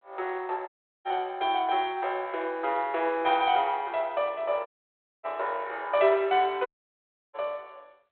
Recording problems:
phone line; 340 Hz to 4 kHz, G.726
audio cutting out; at 0.5 s, at 4.5 s for 0.5 s and at 6.5 s for 0.5 s

